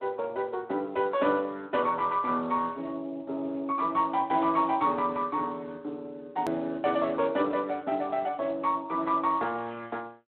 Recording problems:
phone line; 260 Hz to 3.8 kHz, Speex
click at an edit; at 6.5 s

